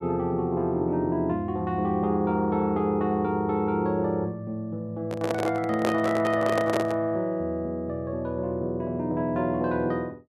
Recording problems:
handling noise; from 5 to 7 s; peak +2 dB vs average level

